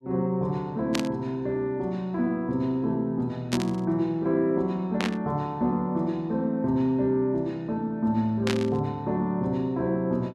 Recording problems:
burst of static; 4 times, first at 1 s; peak +2 dB vs average level

